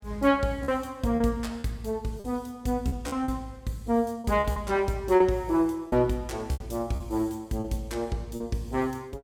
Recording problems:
lost packets; 7% of the sound replaced, filled with repeated pitch periods

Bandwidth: 17 kHz